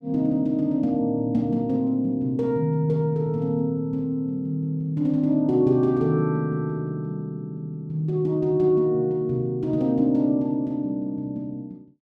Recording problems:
none

